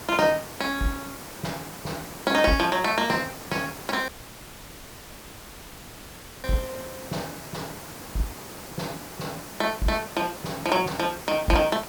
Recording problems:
hiss; slope -4 dB per octave, SNR 11 dB
dropout; at 4 s for 2.5 s

